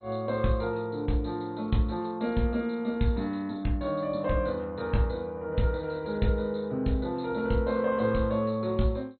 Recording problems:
codec artefacts; MP2, log-spectral distance 3 dB, nothing above 4.2 kHz

